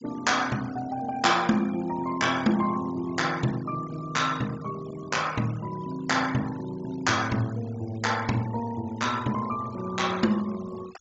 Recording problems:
treble missing; nothing above 7.5 kHz
denoising artefacts; signal-to-artefact ratio 18 dB

